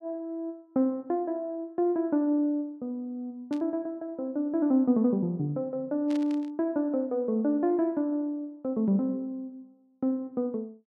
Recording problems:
static burst; at 3.5 s and at 6 s; peak -12 dB vs average level

